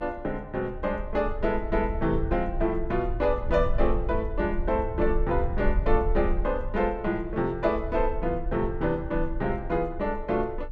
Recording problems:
rumble; below 56 Hz, SNR 6 dB

